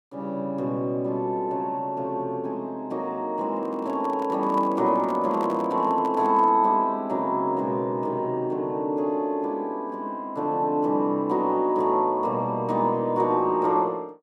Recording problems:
microphone handling noise; from 3.5 to 6.5 s; peak -9 dB vs average level

